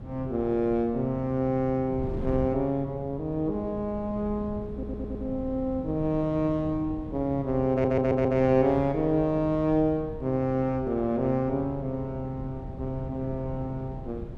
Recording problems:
wind on the microphone; below 200 Hz, SNR 12 dB
stutter; at 4.5 s and at 7.5 s

